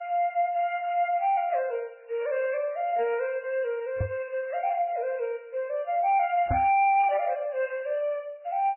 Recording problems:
lossy codec; MP3, log-spectral distance 2 dB, nothing above 2.4 kHz
distortion; soft clipping, signal-to-distortion ratio 12 dB
microphone thump; at 4 s and at 6.5 s; peak +2 dB vs average level

